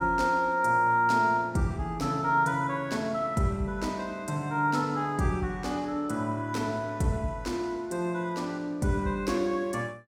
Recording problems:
none

